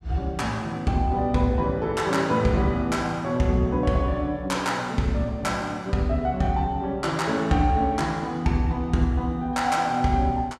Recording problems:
none

